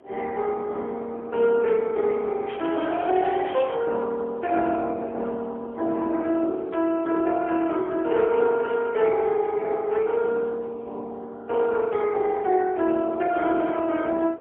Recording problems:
telephone audio; 280 Hz to 3.6 kHz, AMR-NB, then MP3
wind on the microphone; below 610 Hz, SNR 23 dB
crackling; from 2.5 to 4 s; loose cable, SNR 19 dB

